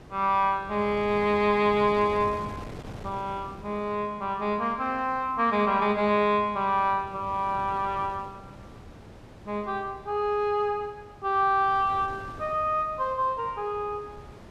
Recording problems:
wind on the microphone; below 600 Hz, SNR 18 dB

